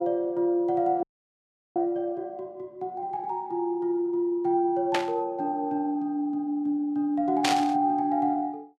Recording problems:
audio freezing; at 1 s for 0.5 s
static burst; at 5 s and at 7.5 s; peak +5 dB vs average level

